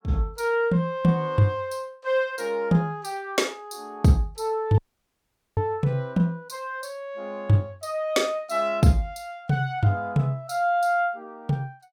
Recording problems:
dropout; at 5 s for 1 s

